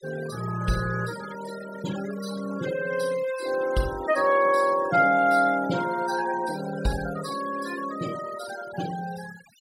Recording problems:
noise reduction artefacts; signal-to-artefact ratio 15 dB

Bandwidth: 16.5 kHz